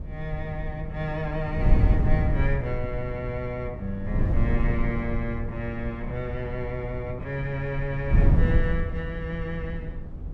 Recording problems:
wind noise; below 110 Hz, SNR -2 dB

